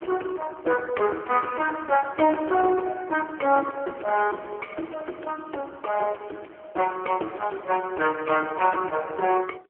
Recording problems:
phone line; 280 Hz to 3.3 kHz, AMR-NB
distortion; soft clipping, signal-to-distortion ratio 13 dB

